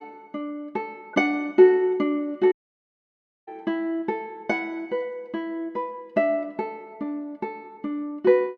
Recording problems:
dropout; at 2.5 s for 1 s

